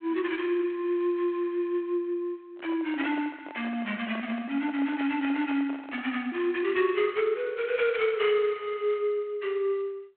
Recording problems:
phone line; 260 Hz to 3.4 kHz, G.726
microphone handling noise; from 2.5 to 6 s; peak -9 dB vs average level

